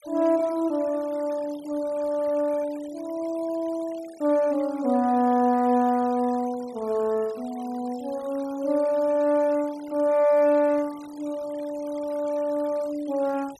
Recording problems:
denoising artefacts; signal-to-artefact ratio 23 dB

